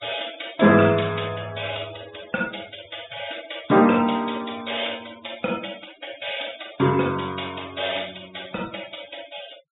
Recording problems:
treble missing; nothing above 4 kHz
denoising artefacts; signal-to-artefact ratio 20 dB

